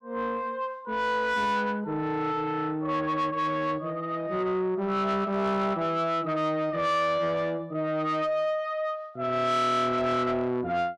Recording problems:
distorted audio; soft clipping, signal-to-distortion ratio 11 dB

